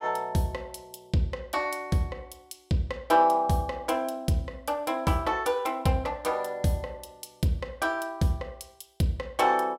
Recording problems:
none

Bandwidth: 16 kHz